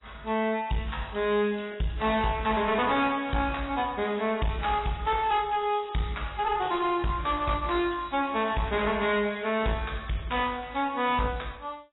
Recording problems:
codec artefacts; AAC, log-spectral distance 8 dB, nothing above 3.9 kHz
distortion; hard clipping, uneven, signal-to-distortion ratio 9 dB

